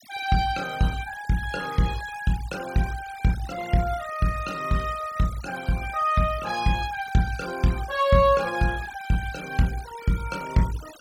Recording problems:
noise reduction artefacts; signal-to-artefact ratio 17 dB

